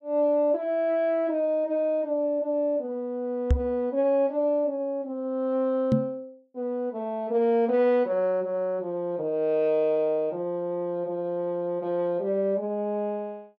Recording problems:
microphone bump; at 3.5 s and at 6 s; peak +7 dB vs average level

